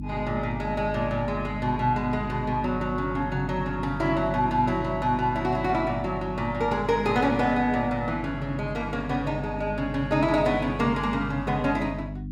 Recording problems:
hum; 50 Hz, harmonics up to 300 Hz, SNR 9 dB

